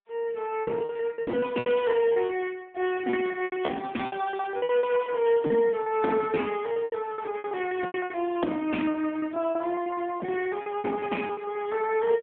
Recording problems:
phone line; 190 Hz to 3.4 kHz, AMR-NB
lost packets; 17% of the sound replaced, filled with repeated pitch periods

